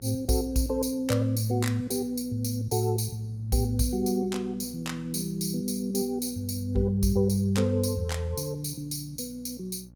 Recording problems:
hum; 60 Hz, harmonics up to 600 Hz, SNR 23 dB

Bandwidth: 18 kHz